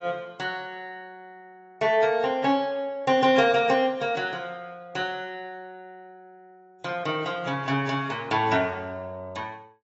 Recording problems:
codec artefacts; AAC, log-spectral distance 2 dB, nothing above 7.6 kHz

